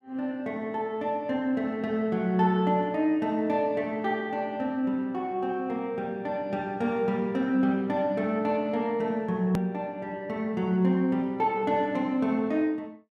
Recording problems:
click at an edit; at 9.5 s

